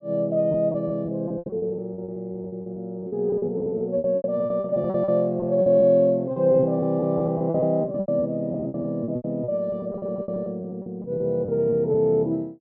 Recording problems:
packet loss; 18% of the sound replaced, filled with repeated pitch periods

